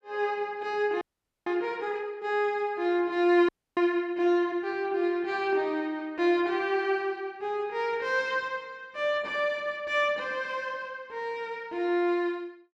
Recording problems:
audio freezing; at 1 s and at 3.5 s

